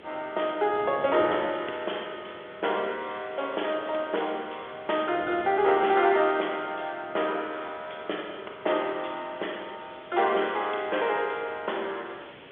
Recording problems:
phone line; 300 Hz to 3.5 kHz, G.711
background hiss; SNR 23 dB
wind on the microphone; below 660 Hz, SNR 20 dB

